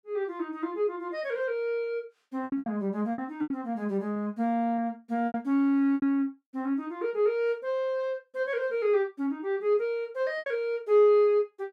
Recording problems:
lost packets; 5% of the sound replaced, filled with repeated pitch periods

